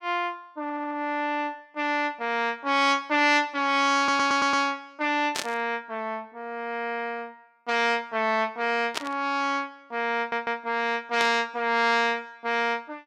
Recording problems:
stutter; at 0.5 s, at 4 s and at 10 s
static burst; at 5.5 s, at 9 s and at 11 s; peak +1 dB vs average level

